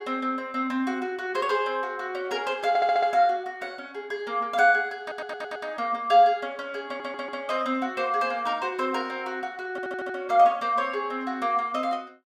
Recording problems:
audio stuttering; 4 times, first at 2.5 s

